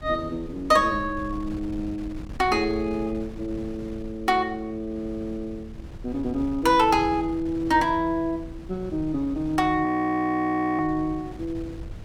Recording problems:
wind noise; below 160 Hz, SNR 15 dB
frozen audio; at 10 s for 1 s

